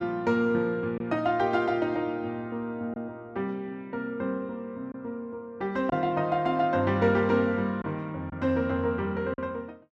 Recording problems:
lost packets; 1.6% of the sound replaced, filled with silence

